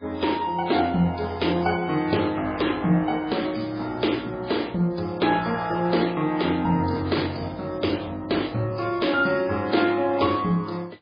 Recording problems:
lossy compression; MP3, then MP3, log-spectral distance 5 dB

